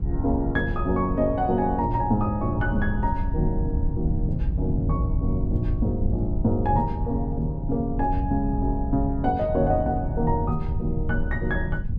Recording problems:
wind on the microphone; below 100 Hz, SNR 3 dB

